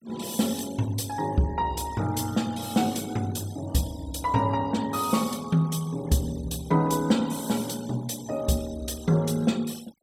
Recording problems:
noise reduction artefacts; signal-to-artefact ratio 20 dB

